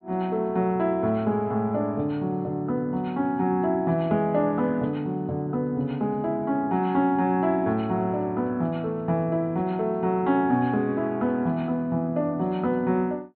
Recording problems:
treble missing; nothing above 4.1 kHz

